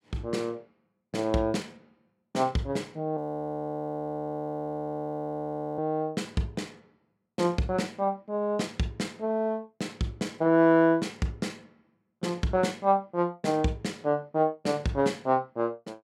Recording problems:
audio freezing; at 3 s for 2.5 s

